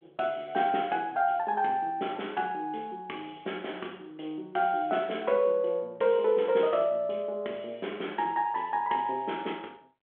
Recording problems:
phone line; 260 Hz to 3.4 kHz, G.726

